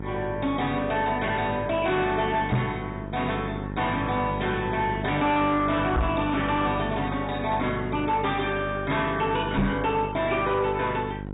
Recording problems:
treble cut off; nothing above 3.8 kHz
lossy compression; MP2, log-spectral distance 3 dB
distorted audio; soft clipping, signal-to-distortion ratio 10 dB
electrical hum; 50 Hz, harmonics up to 1.4 kHz, SNR 8 dB
microphone bump; at 2.5 s, at 6 s and at 9.5 s; peak +5 dB vs average level

